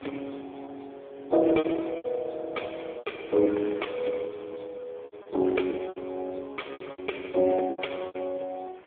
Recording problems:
phone line; 240 Hz to 3.4 kHz, AMR-NB
wind noise; below 2.1 kHz, SNR 24 dB
packet loss; 10% of the sound replaced, filled with repeated pitch periods

